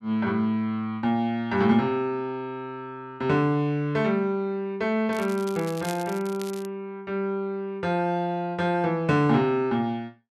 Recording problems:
crackling; from 5 to 6.5 s; loose cable, SNR 17 dB

